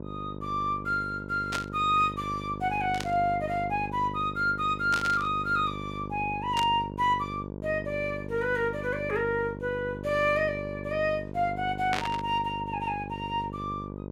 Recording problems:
electrical hum; 50 Hz, harmonics up to 1.1 kHz, SNR 10 dB
burst of static; 5 times, first at 1.5 s; peak +1 dB vs average level

